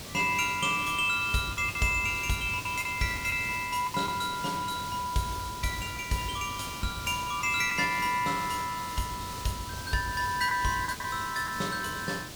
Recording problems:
background hiss; SNR 10 dB
lost packets; 4% of the sound replaced, filled with the last packet

